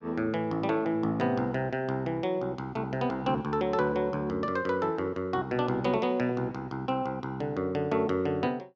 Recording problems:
none

